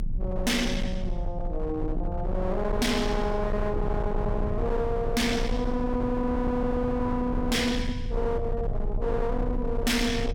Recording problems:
distorted audio; hard clipping, signal-to-distortion ratio 6 dB
rumble; below 110 Hz, strongest tone 24 Hz, SNR 5 dB

